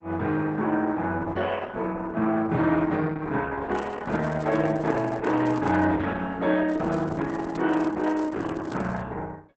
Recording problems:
lossy codec; Opus, log-spectral distance 3 dB, nothing above 7.3 kHz
crackling; from 3.5 to 6 s, at 6.5 s and from 7.5 to 9 s; loose cable, SNR 28 dB

